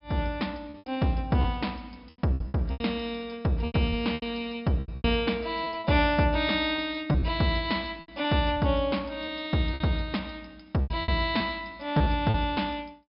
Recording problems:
treble cut off; nothing above 5.2 kHz
packet loss; 10% of the sound replaced, filled with repeated pitch periods

